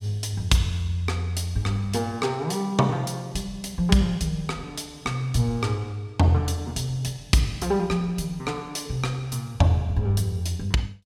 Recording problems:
none

